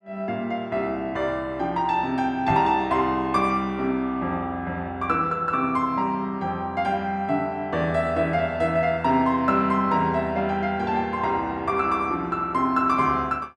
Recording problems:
knock on the microphone; at 2.5 s; peak -1 dB vs average level

